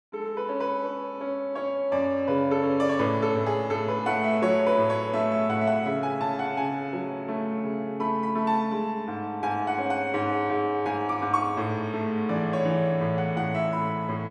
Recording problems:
none

